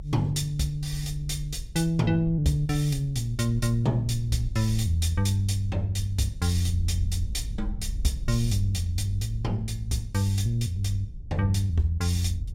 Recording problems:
rumble; below 64 Hz, SNR 10 dB

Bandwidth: 16.5 kHz